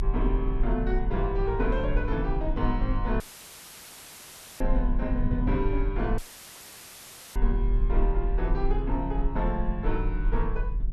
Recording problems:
hum; 50 Hz, harmonics up to 400 Hz, SNR 12 dB
rumble; below 40 Hz, strongest tone 38 Hz, SNR 0 dB
wind noise; below 170 Hz, SNR 9 dB
dropout; at 3 s for 1.5 s and at 6 s for 1 s; filled with static

